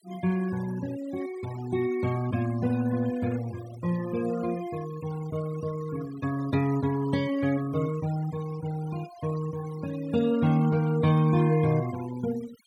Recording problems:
denoising artefacts; signal-to-artefact ratio 16 dB

